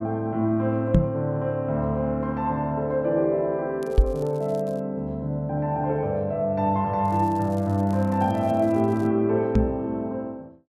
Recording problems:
microphone bump; at 1 s, at 4 s and at 9.5 s; peak +9 dB vs average level
crackle; at 4 s and from 7 to 9 s; loose cable, SNR 29 dB

